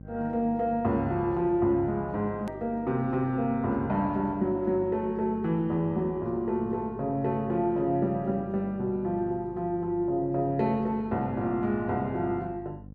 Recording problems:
hum; 50 Hz, harmonics up to 550 Hz, SNR 18 dB
hard cut with a click; at 2.5 s

